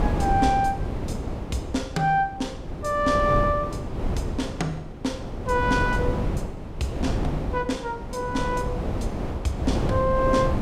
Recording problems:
wind noise; below 350 Hz, SNR 4 dB

